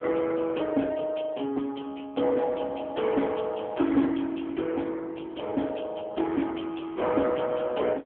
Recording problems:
telephone audio; 220 Hz to 3.3 kHz, AMR-NB

